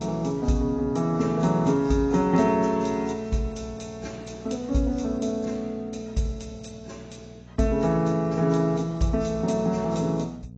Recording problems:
lossy compression; AAC, log-spectral distance 3 dB, nothing above 7.6 kHz
hum; 60 Hz, harmonics up to 480 Hz, SNR 20 dB

